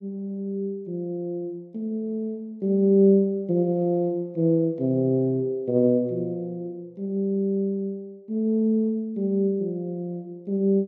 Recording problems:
none

